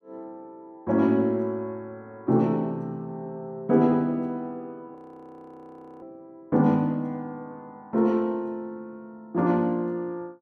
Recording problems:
frozen audio; at 5 s for 1 s

